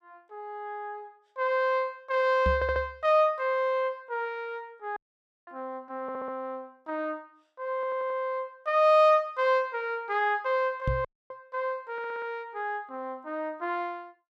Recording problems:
microphone thump; at 2.5 s and at 11 s; peak +2 dB vs average level
stutter; 4 times, first at 2.5 s
audio cutting out; at 5 s for 0.5 s and at 11 s

